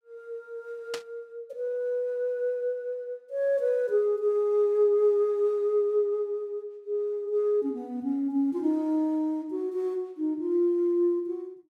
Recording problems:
burst of static; at 1 s; peak -4 dB vs average level

